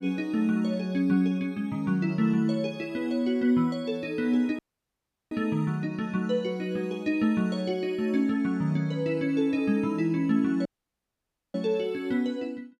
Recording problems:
audio cutting out; at 4.5 s for 0.5 s and at 11 s for 1 s

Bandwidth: 15 kHz